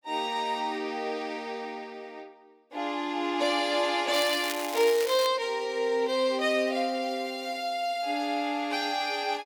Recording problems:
crackling; from 4 to 5.5 s; loose cable, SNR 9 dB

